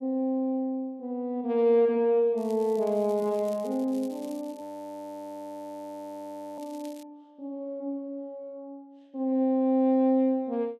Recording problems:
crackle; from 2.5 to 7 s; loose cable, SNR 28 dB
audio freezing; at 4.5 s for 2 s

